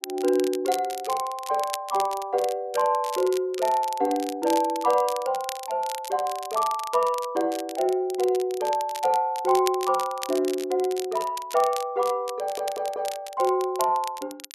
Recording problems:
crackle; vinyl, SNR 14 dB
stutter; at 12 s

